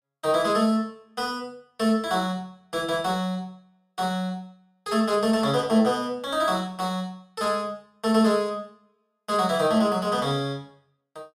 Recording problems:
none

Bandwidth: 15 kHz